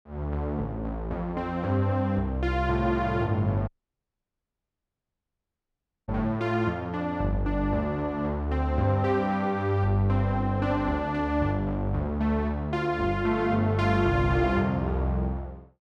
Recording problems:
dropout; at 3.5 s for 2.5 s

